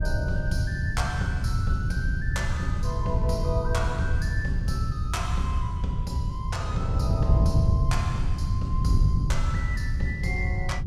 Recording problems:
wind noise; below 120 Hz, SNR -4 dB

